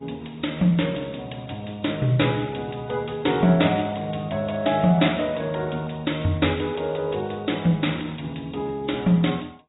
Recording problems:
low-pass filter; nothing above 3.8 kHz
lossy codec; AAC, then Vorbis, log-spectral distance 5 dB

